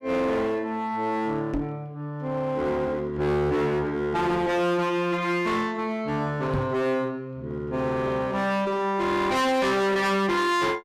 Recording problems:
distorted audio; hard clipping, uneven, signal-to-distortion ratio 5 dB
microphone bump; at 1.5 s and at 6.5 s; peak +1 dB vs average level

